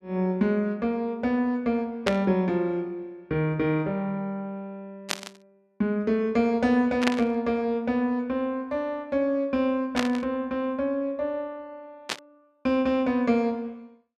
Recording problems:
burst of static; 5 times, first at 2 s; peak +4 dB vs average level

